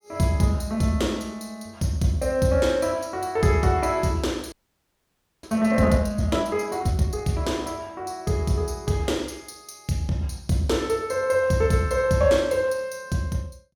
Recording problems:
frozen audio; at 4.5 s for 1 s

